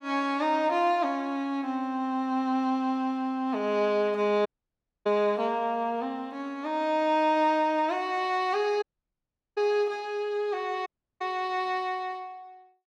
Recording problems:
audio cutting out; at 4.5 s for 0.5 s, at 9 s for 0.5 s and at 11 s

